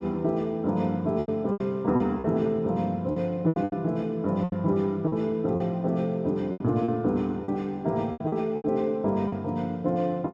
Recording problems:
packet loss; 10% of the sound replaced, filled with repeated pitch periods

